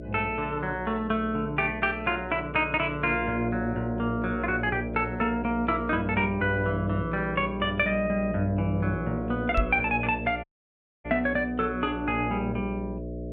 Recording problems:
electrical hum; 60 Hz, harmonics up to 660 Hz, SNR 10 dB
microphone bump; at 9.5 s; peak +4 dB vs average level
dropout; at 10 s for 0.5 s

